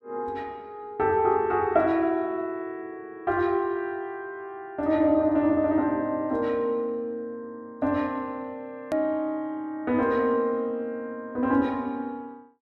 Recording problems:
click at an edit; at 9 s

